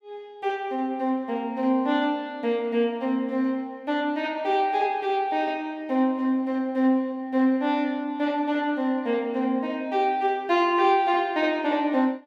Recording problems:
none

